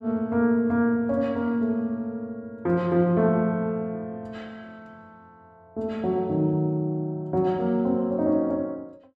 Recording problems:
none

